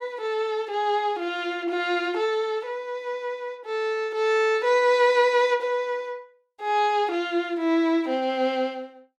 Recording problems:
none

